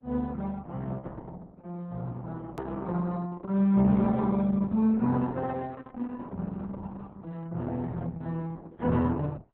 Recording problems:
codec artefacts; MP3, then Opus, log-spectral distance 2 dB, nothing above 16.1 kHz
hard cut with a click; at 2.5 s

